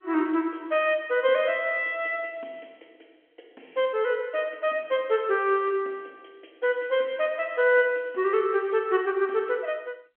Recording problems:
phone line; 240 Hz to 3.3 kHz, G.711

